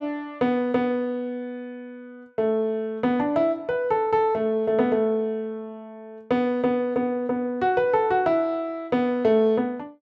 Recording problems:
none

